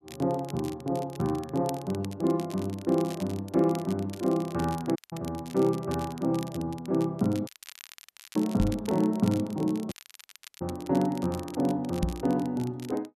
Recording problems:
crackle; vinyl, SNR 18 dB
audio cutting out; at 5 s, at 7.5 s for 1 s and at 10 s for 0.5 s
microphone thump; at 8.5 s and at 12 s; peak +5 dB vs average level

